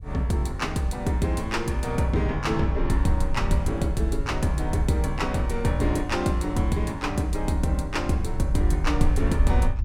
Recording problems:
rumble; below 60 Hz, SNR 6 dB

